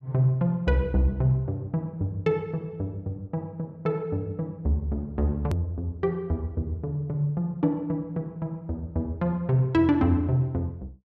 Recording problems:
edit click; at 5.5 s

